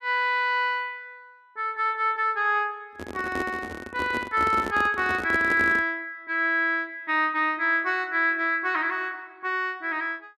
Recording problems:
handling noise; from 3 to 6 s; peak -3 dB vs average level

